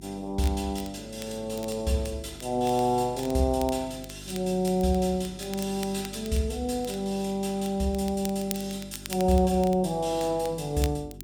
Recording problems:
hum; 50 Hz, harmonics up to 400 Hz, SNR 18 dB
crackling; vinyl, SNR 17 dB

